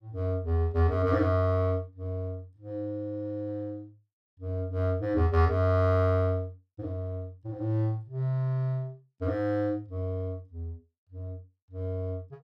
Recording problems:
none

